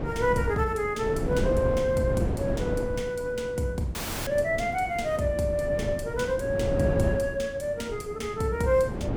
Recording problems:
wind on the microphone; below 370 Hz, SNR 6 dB
audio cutting out; at 4 s

